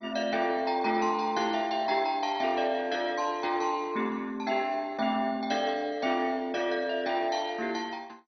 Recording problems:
codec artefacts; MP2, log-spectral distance 3 dB, nothing above 4.9 kHz

